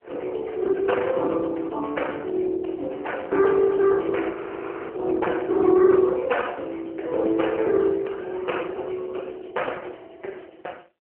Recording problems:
telephone audio; 280 Hz to 3.1 kHz, AMR-NB
audio freezing; at 4.5 s for 0.5 s

